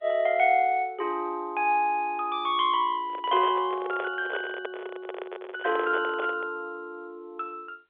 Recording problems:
telephone audio; 320 Hz to 3.5 kHz, G.711
handling noise; from 3 to 6.5 s; peak -2 dB vs average level

